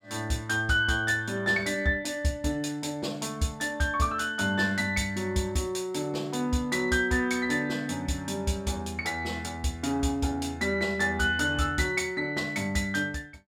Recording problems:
none

